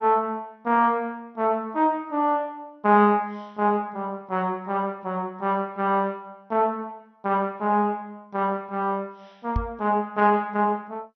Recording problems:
codec artefacts; MP2, log-spectral distance 2 dB
microphone thump; at 9.5 s; peak +2 dB vs average level

